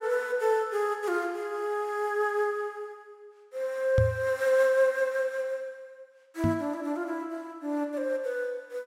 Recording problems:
microphone bump; at 4 s and at 6.5 s; peak +6 dB vs average level

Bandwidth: 16 kHz